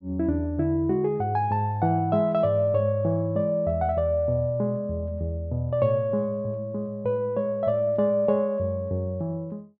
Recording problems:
none

